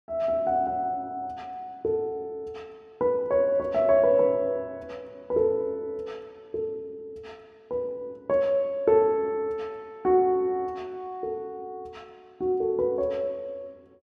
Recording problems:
none

